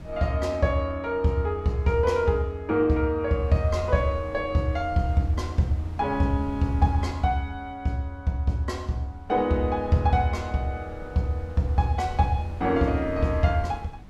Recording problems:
wind noise; below 140 Hz, SNR 17 dB

